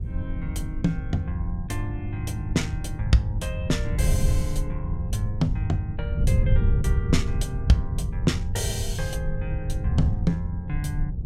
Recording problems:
wind noise; below 100 Hz, SNR 0 dB

